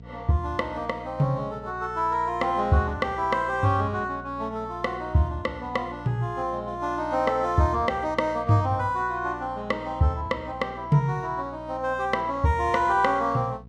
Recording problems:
electrical hum; 60 Hz, harmonics up to 720 Hz, SNR 19 dB

